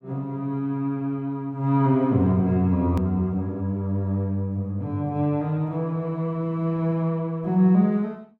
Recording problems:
click at an edit; at 3 s

